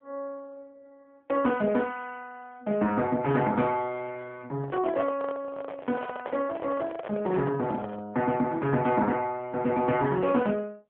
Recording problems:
phone line; 150 Hz to 3.4 kHz, AMR-NB
microphone handling noise; from 4.5 to 8 s; peak -3 dB vs average level

